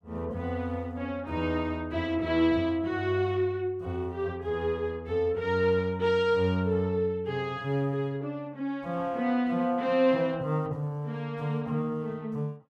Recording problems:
none

